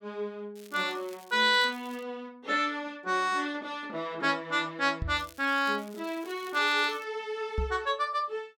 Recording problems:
crackle; from 0.5 to 2 s and from 5 to 7 s; loose cable, SNR 24 dB
microphone bump; at 5 s and at 7.5 s; peak +1 dB vs average level

